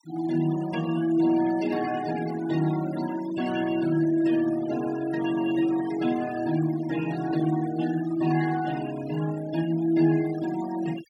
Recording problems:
noise reduction artefacts; signal-to-artefact ratio 14 dB

